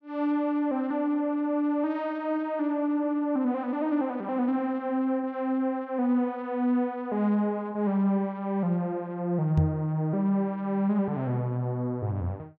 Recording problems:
microphone thump; at 9.5 s; peak +5 dB vs average level

